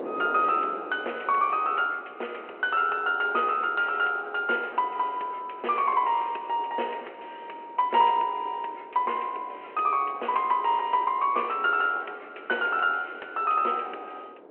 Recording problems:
phone line; 320 Hz to 3.1 kHz, G.726
wind noise; below 670 Hz, SNR 19 dB

